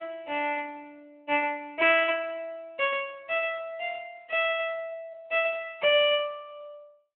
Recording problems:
phone line; 280 Hz to 3.2 kHz, Speex

